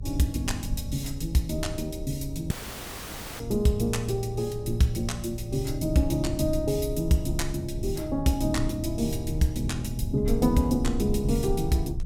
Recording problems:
hum; 60 Hz, harmonics up to 600 Hz, SNR 28 dB
rumble; below 82 Hz, SNR 8 dB
dropout; at 2.5 s for 1 s

